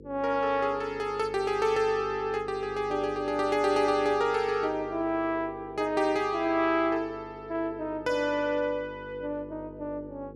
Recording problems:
hum; 50 Hz, harmonics up to 500 Hz, SNR 18 dB

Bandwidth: 12.5 kHz